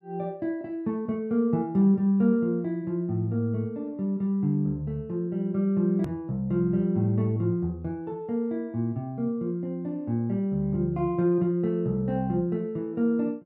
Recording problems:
edit click; at 6 s

